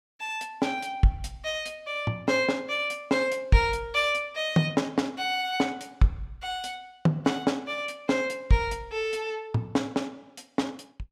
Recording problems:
none

